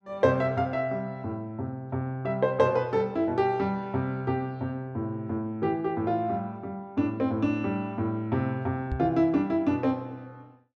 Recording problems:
microphone bump; at 9 s; peak 0 dB vs average level

